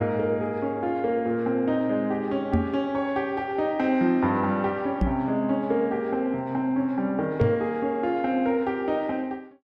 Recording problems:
microphone bump; at 2.5 s, at 5 s and at 7.5 s; peak +6 dB vs average level

